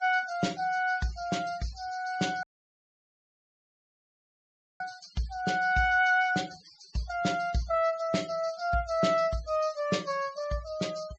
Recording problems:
low-pass filter; nothing above 8 kHz
noise reduction artefacts; signal-to-artefact ratio 22 dB
dropout; at 2.5 s for 2.5 s

